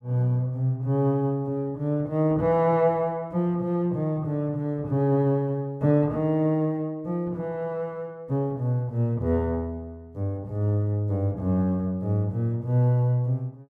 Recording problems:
none

